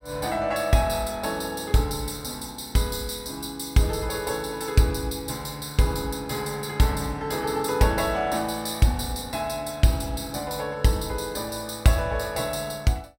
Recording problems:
none

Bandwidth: 16 kHz